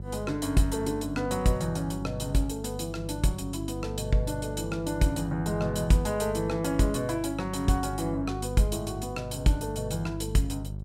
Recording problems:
mains hum; 50 Hz, harmonics up to 400 Hz, SNR 9 dB

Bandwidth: 16 kHz